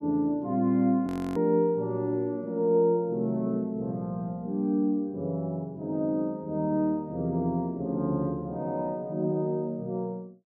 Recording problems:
frozen audio; at 1 s

